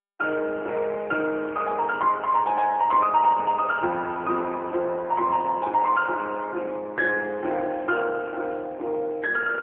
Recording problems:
phone line; 260 Hz to 2.8 kHz, AMR-NB

